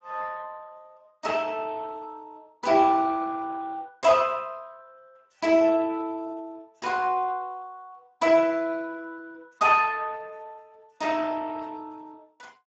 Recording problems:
lossy codec; Speex, log-spectral distance 3 dB, nothing above 7.3 kHz

